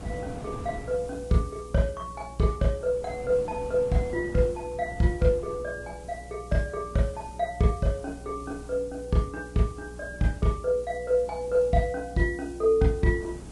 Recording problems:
codec artefacts; Vorbis, log-spectral distance 4 dB
hum; 60 Hz, harmonics up to 420 Hz, SNR 18 dB
hiss; slope +4 dB per octave, SNR 26 dB
wind on the microphone; below 400 Hz, SNR 18 dB

